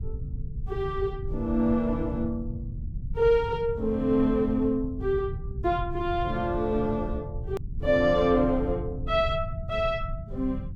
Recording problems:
low-frequency rumble; below 120 Hz, SNR 9 dB
click at an edit; at 7.5 s

